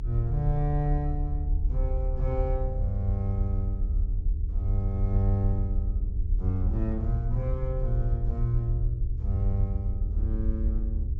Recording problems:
treble missing; nothing above 8 kHz
hum; 60 Hz, harmonics up to 420 Hz, SNR 14 dB
rumble; below 72 Hz, strongest tone 40 Hz, SNR -1 dB

